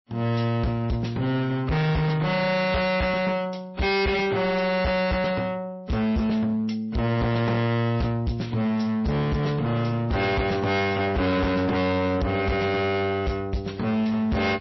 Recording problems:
lossy compression; MP3, log-spectral distance 3 dB, nothing above 5.7 kHz
distorted audio; hard clipping, signal-to-distortion ratio 6 dB

